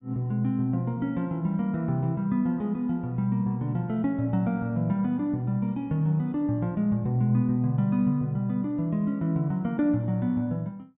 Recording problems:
treble missing; nothing above 4 kHz

